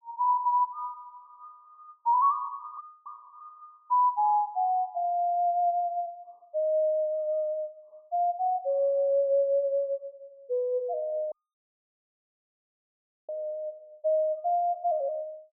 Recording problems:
dropout; at 3 s and at 11 s for 2 s

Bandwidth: 1 kHz